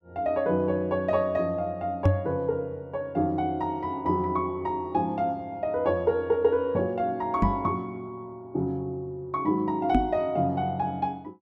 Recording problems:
knock on the microphone; at 2 s, at 7.5 s and at 10 s; peak +8 dB vs average level

